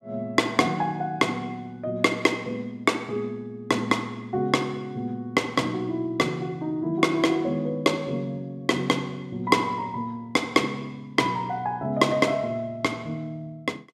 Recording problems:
none

